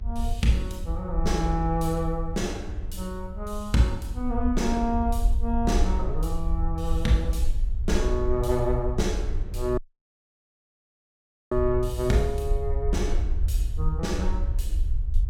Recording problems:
hum; 50 Hz, harmonics up to 1.1 kHz, SNR 22 dB
rumble; below 62 Hz, SNR 2 dB
audio cutting out; at 10 s for 1.5 s

